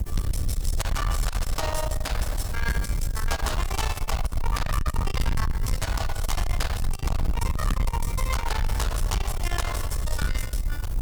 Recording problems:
distorted audio; soft clipping, signal-to-distortion ratio 9 dB
background hiss; SNR 13 dB
wind on the microphone; below 80 Hz, SNR 0 dB

